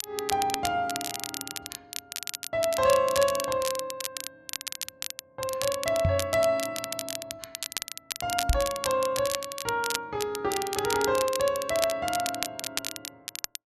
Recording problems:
crackle; vinyl, SNR 6 dB
microphone bump; at 6 s and at 8.5 s; peak +6 dB vs average level

